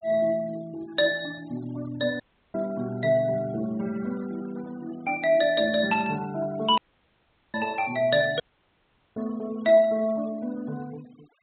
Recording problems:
low-pass filter; nothing above 4 kHz
denoising artefacts; signal-to-artefact ratio 23 dB
dropout; at 2 s, at 7 s for 1 s and at 8.5 s for 1 s
static burst; at 6 s; peak -10 dB vs average level

